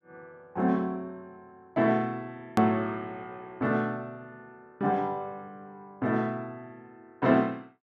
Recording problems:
click at an edit; at 2.5 s

